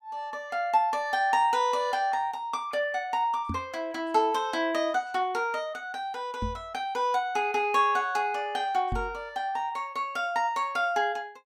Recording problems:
microphone bump; at 3.5 s, at 6.5 s and at 9 s; peak -2 dB vs average level

